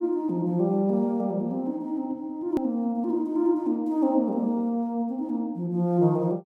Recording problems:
click at an edit; at 2.5 s

